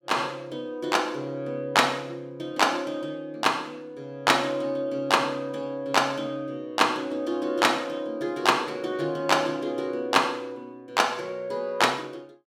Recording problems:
none

